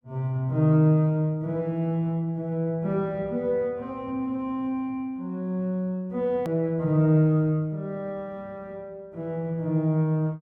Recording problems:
hard cut with a click; at 6.5 s

